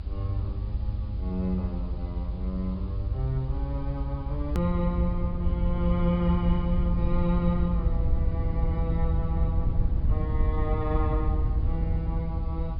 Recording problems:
low-pass filter; nothing above 5.1 kHz
lossy codec; AAC, log-spectral distance 2 dB
hiss; SNR 29 dB
low-frequency rumble; below 84 Hz, SNR -2 dB
hard cut with a click; at 4.5 s

